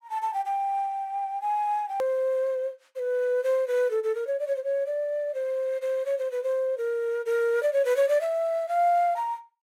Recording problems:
hard cut with a click; at 2 s

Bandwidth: 16 kHz